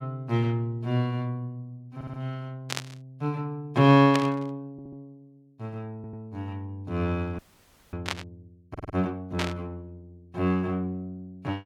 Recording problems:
audio stuttering; 4 times, first at 2 s
static burst; 4 times, first at 2.5 s; peak +2 dB vs average level
audio freezing; at 7.5 s for 0.5 s

